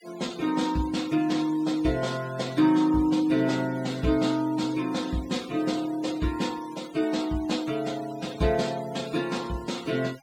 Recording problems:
denoising artefacts; signal-to-artefact ratio 18 dB

